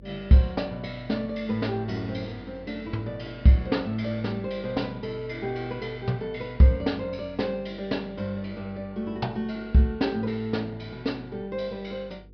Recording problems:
treble missing; nothing above 5.5 kHz
electrical hum; 50 Hz, harmonics up to 500 Hz, SNR 22 dB

